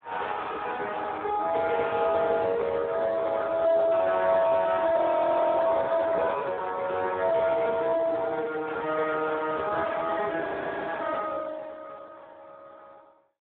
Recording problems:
telephone audio; 340 Hz to 2.1 kHz, Speex
frozen audio; at 5 s for 0.5 s and at 10 s

